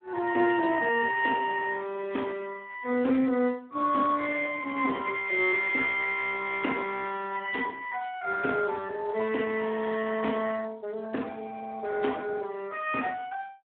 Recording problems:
phone line; 240 Hz to 3.5 kHz, Speex

